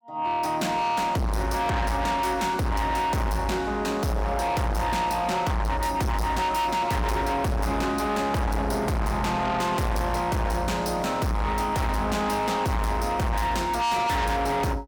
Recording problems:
distortion; soft clipping, signal-to-distortion ratio 6 dB

